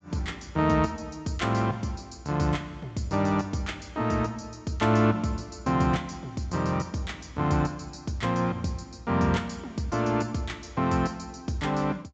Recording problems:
low-pass filter; nothing above 8 kHz

